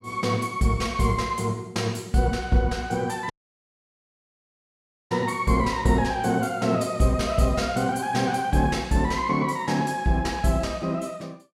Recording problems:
audio cutting out; at 3.5 s for 2 s

